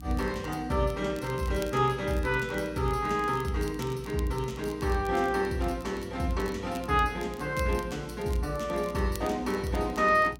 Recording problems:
hum; 60 Hz, harmonics up to 300 Hz, SNR 17 dB
crackling; vinyl, SNR 21 dB

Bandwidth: 16 kHz